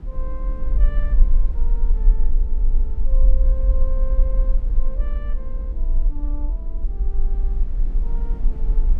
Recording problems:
rumble; below 40 Hz, strongest tone 22 Hz, SNR -17 dB
wind on the microphone; below 240 Hz, SNR 2 dB

